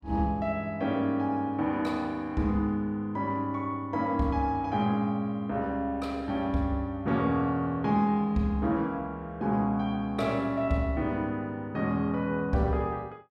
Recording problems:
none

